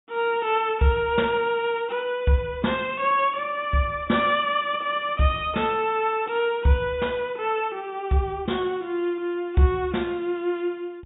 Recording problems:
treble cut off; nothing above 4 kHz

